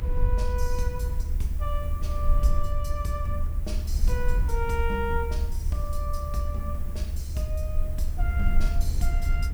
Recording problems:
hiss; slope -2 dB per octave, SNR 18 dB
rumble; below 70 Hz, SNR -5 dB

